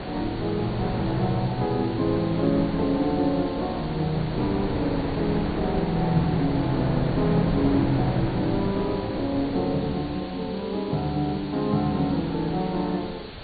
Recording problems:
treble cut off; nothing above 4.6 kHz
background hiss; SNR 17 dB
wind noise; below 670 Hz, SNR 8 dB

